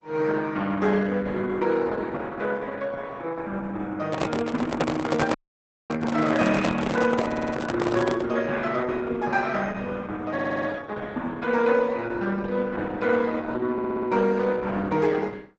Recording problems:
lossy codec; Opus, log-spectral distance 4 dB, nothing above 7.3 kHz
microphone handling noise; from 4 to 8.5 s; peak +8 dB vs average level
dropout; at 5.5 s for 0.5 s
stutter; at 7.5 s, at 10 s and at 14 s

